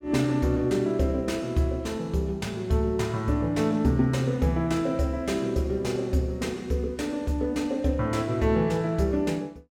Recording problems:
none

